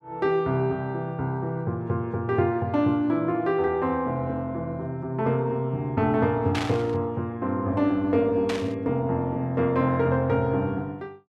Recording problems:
burst of static; at 6.5 s and at 8.5 s; peak -2 dB vs average level

